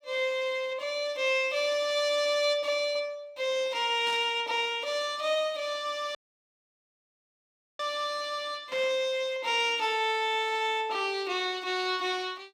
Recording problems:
burst of static; at 4 s and at 8.5 s; peak -10 dB vs average level
dropout; at 6 s for 1.5 s

